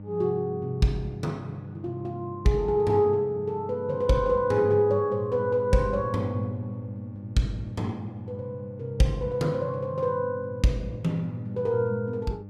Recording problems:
electrical hum; 50 Hz, harmonics up to 600 Hz, SNR 14 dB

